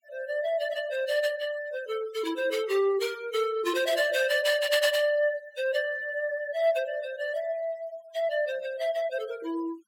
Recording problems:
noise reduction artefacts; signal-to-artefact ratio 17 dB

